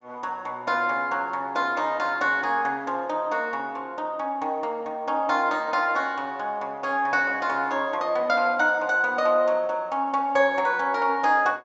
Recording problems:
low-pass filter; nothing above 8 kHz

